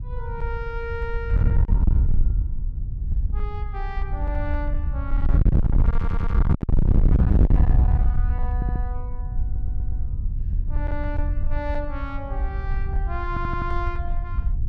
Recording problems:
distortion; hard clipping, signal-to-distortion ratio 6 dB
wind on the microphone; below 82 Hz, SNR -10 dB
stutter; 4 times, first at 6 s

